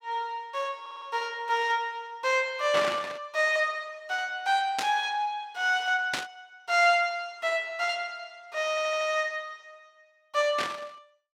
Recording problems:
audio stuttering; at 1 s and at 8.5 s
static burst; 4 times, first at 2.5 s; peak +2 dB vs average level

